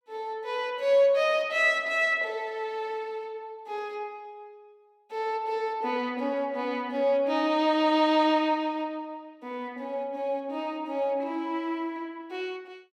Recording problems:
none

